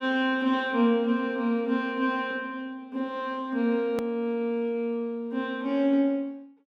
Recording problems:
click at an edit; at 4 s

